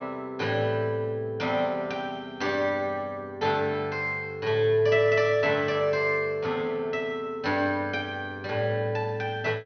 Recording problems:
treble missing; nothing above 6.2 kHz

